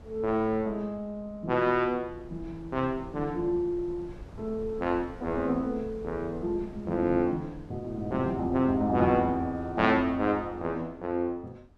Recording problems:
wind on the microphone; below 220 Hz, SNR 18 dB

